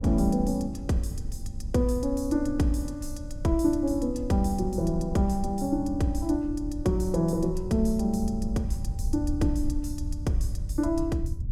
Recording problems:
rumble; below 76 Hz, SNR 8 dB

